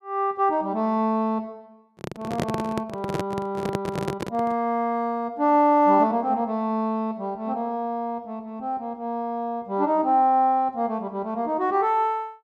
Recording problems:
microphone handling noise; from 2 to 4.5 s; peak +1 dB vs average level

